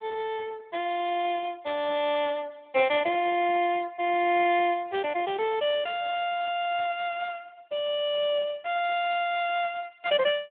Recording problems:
telephone audio; 300 Hz to 3.6 kHz, Speex

